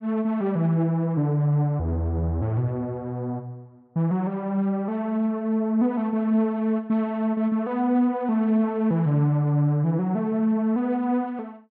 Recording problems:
none

